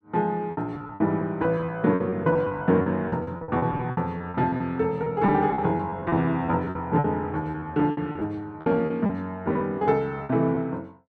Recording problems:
lost packets; 15% of the sound replaced, filled with repeated pitch periods

